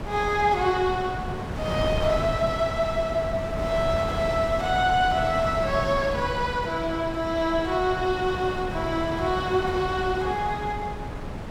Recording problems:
wind noise; below 610 Hz, SNR 7 dB

